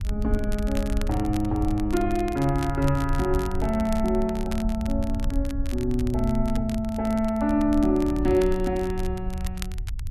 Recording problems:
rumble; below 70 Hz, SNR 7 dB
crackle; vinyl, SNR 18 dB

